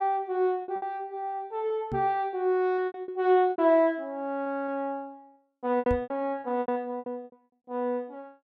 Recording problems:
packet loss; 12% of the sound replaced, filled with repeated pitch periods
microphone thump; at 2 s and at 6 s; peak -2 dB vs average level

